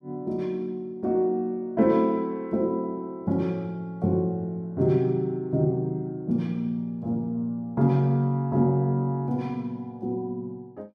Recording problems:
none

